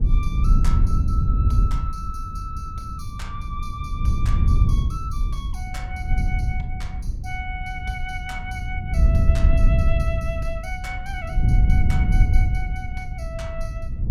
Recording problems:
wind on the microphone; below 90 Hz, SNR -10 dB

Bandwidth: 17.5 kHz